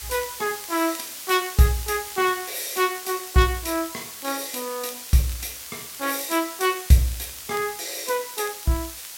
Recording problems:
hiss; slope +3 dB per octave, SNR 10 dB
crackle; vinyl, SNR 22 dB

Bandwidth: 16.5 kHz